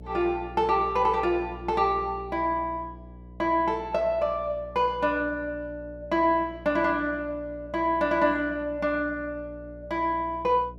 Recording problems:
hum; 60 Hz, harmonics up to 660 Hz, SNR 19 dB

